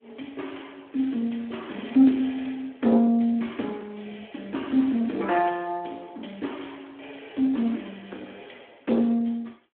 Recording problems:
phone line; 240 Hz to 3.4 kHz, Speex
distorted audio; soft clipping, signal-to-distortion ratio 13 dB

